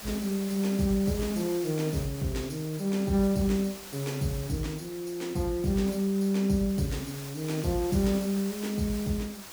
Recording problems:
background hiss; slope -2 dB per octave, SNR 13 dB

